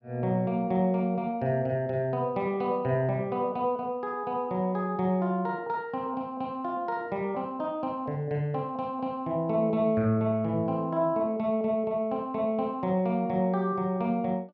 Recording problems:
none

